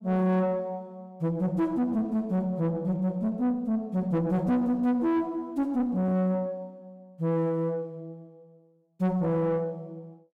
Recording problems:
distortion; soft clipping, signal-to-distortion ratio 10 dB

